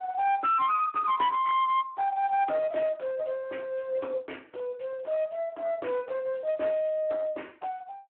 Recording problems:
phone line; 280 Hz to 3.3 kHz, Speex
distortion; hard clipping, uneven, signal-to-distortion ratio 10 dB

